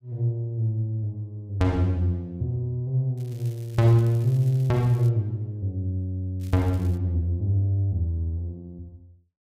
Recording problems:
crackling; from 3 to 5 s and at 6.5 s; loose cable, SNR 27 dB

